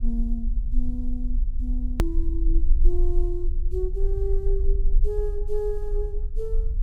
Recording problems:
rumble; below 40 Hz, strongest tone 22 Hz, SNR -6 dB
edit click; at 2 s

